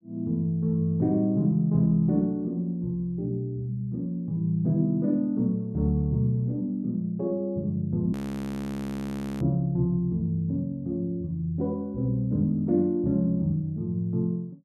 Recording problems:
frozen audio; at 8 s for 1.5 s

